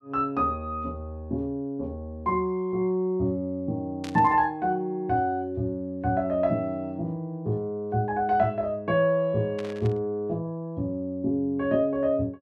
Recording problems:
burst of static; at 4 s and at 9.5 s; peak -9 dB vs average level

